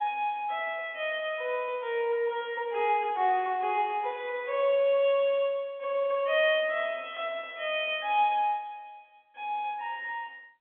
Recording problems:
telephone audio; 240 Hz to 3.3 kHz, G.711

